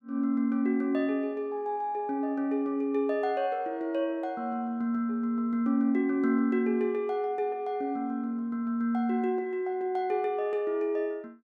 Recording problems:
none

